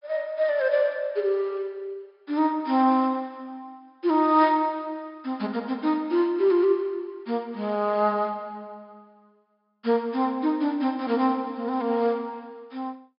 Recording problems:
low-pass filter; nothing above 5.5 kHz

